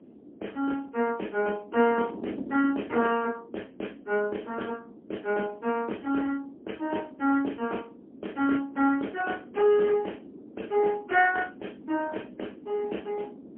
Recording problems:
phone line; 220 Hz to 3.2 kHz, AMR-NB, then MP3
wind on the microphone; below 370 Hz, SNR 18 dB

